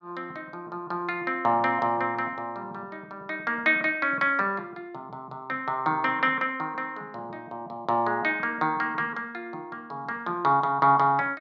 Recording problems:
none

